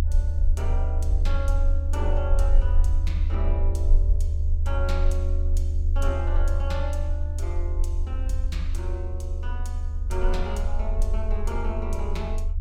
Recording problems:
rumble; below 76 Hz, strongest tone 28 Hz, SNR -8 dB

